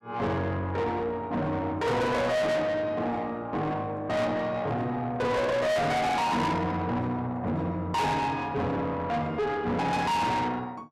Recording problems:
distortion; soft clipping, signal-to-distortion ratio 6 dB

